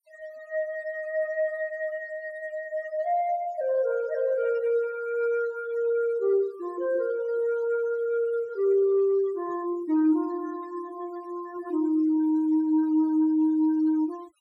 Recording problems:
noise reduction artefacts; signal-to-artefact ratio 24 dB

